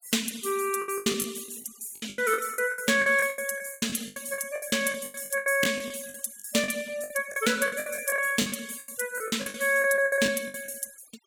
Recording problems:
noise reduction artefacts; signal-to-artefact ratio 19 dB
packet loss; 19% of the sound replaced, filled with the last packet

